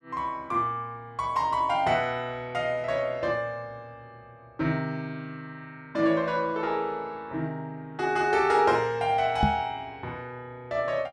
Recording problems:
microphone bump; at 9.5 s; peak +6 dB vs average level

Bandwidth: 13.5 kHz